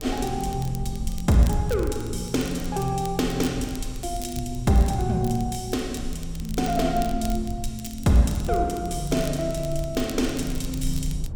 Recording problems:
rumble; below 64 Hz, SNR 11 dB
crackle; vinyl, SNR 18 dB

